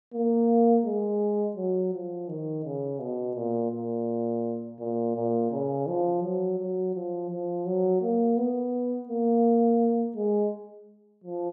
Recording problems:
none

